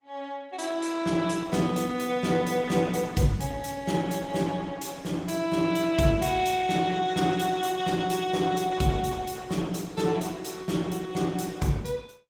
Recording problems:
lossy codec; Opus, log-spectral distance 4 dB, nothing above 18.5 kHz

